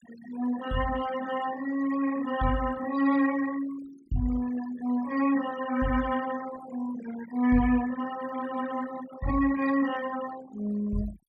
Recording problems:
noise reduction artefacts; signal-to-artefact ratio 15 dB

